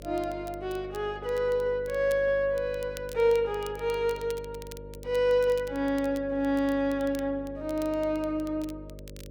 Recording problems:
hum; 50 Hz, harmonics up to 600 Hz, SNR 17 dB
crackle; vinyl, SNR 23 dB

